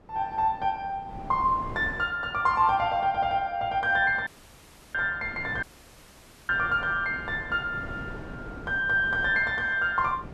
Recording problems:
wind on the microphone; below 500 Hz, SNR 17 dB
dropout; at 4.5 s for 0.5 s and at 5.5 s for 1 s

